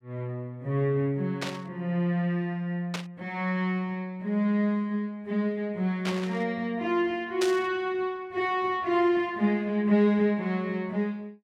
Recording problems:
static burst; 4 times, first at 1.5 s; peak 0 dB vs average level

